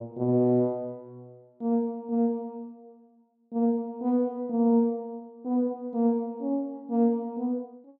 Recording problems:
none

